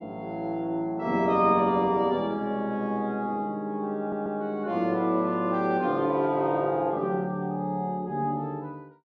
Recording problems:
stutter; at 4 s

